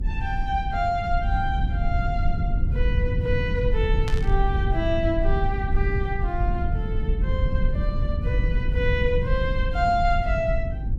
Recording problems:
rumble; below 88 Hz, SNR -2 dB
static burst; at 4 s; peak -4 dB vs average level

